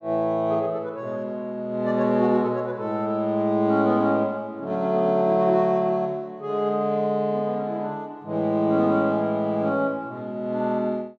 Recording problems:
none

